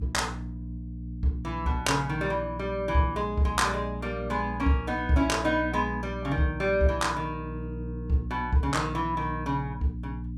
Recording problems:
electrical hum; 60 Hz, harmonics up to 300 Hz, SNR 9 dB

